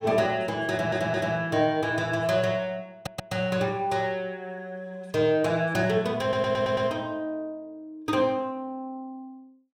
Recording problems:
audio stuttering; at 0.5 s, at 3 s and at 6 s

